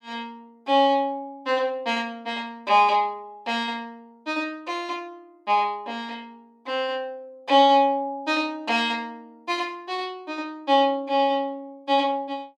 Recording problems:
none

